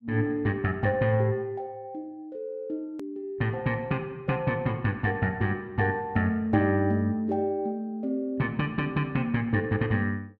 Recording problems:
edit click; at 3 s

